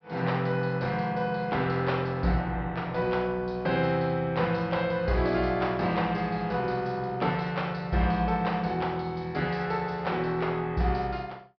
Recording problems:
treble missing; nothing above 5.5 kHz

